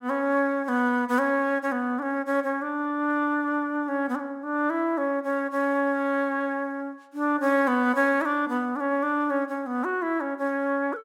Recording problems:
none

